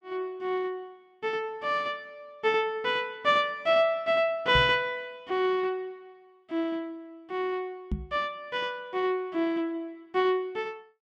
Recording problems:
microphone bump; at 4.5 s and at 8 s; peak +1 dB vs average level

